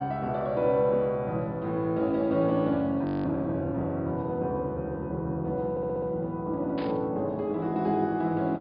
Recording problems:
low-pass filter; nothing above 5 kHz
audio freezing; at 3 s
stutter; at 5.5 s
burst of static; at 7 s; peak -11 dB vs average level

